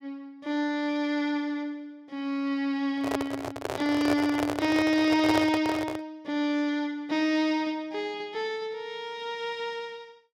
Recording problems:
handling noise; from 3 to 6 s; peak +3 dB vs average level

